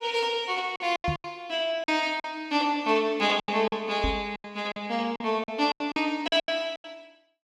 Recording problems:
lost packets; 13% of the sound replaced, filled with silence
microphone thump; at 1 s and at 4 s; peak 0 dB vs average level

